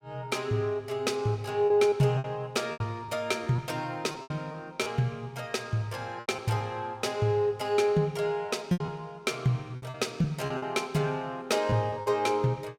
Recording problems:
packet loss; 7% of the sound replaced, filled with repeated pitch periods

